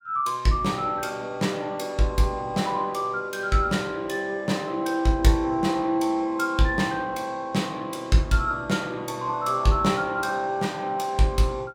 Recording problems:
none

